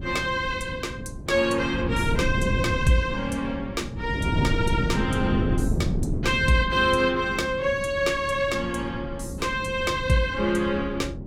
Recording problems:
wind noise; below 230 Hz, SNR 5 dB

